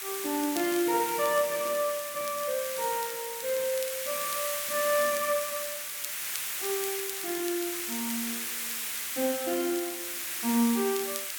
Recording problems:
background hiss; SNR 2 dB
crackling; vinyl, SNR 14 dB

